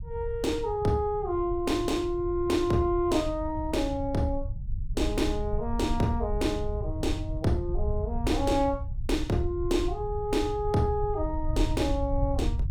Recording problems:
rumble; below 88 Hz, SNR 6 dB

